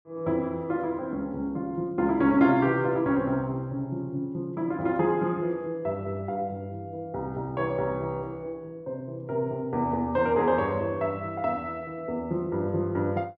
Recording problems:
none

